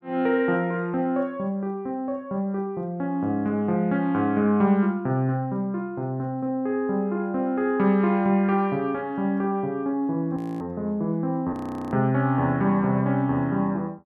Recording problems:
frozen audio; at 10 s and at 12 s

